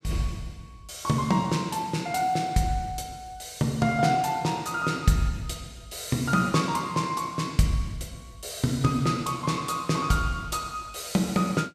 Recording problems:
none

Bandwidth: 14.5 kHz